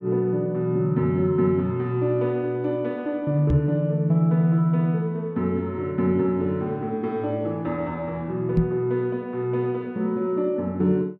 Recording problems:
microphone bump; at 3.5 s and at 8.5 s; peak +7 dB vs average level

